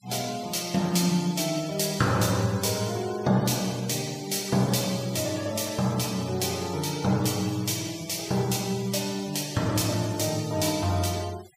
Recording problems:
noise reduction artefacts; signal-to-artefact ratio 17 dB

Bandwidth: 15.5 kHz